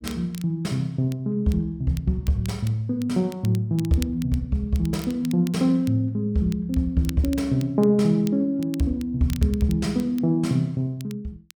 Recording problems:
crackling; vinyl, SNR 21 dB

